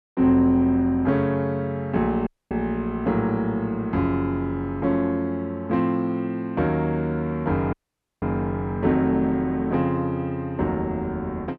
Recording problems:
audio cutting out; at 2.5 s and at 7.5 s

